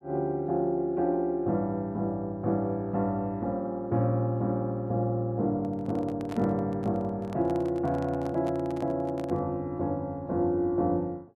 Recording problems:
handling noise; from 5.5 to 9.5 s; peak -7 dB vs average level

